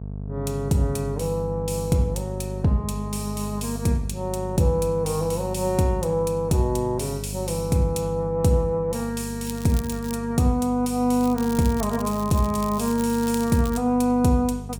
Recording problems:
electrical hum; 50 Hz, harmonics up to 700 Hz, SNR 10 dB
crackling; at 9.5 s and from 11 to 14 s; loose cable, SNR 16 dB

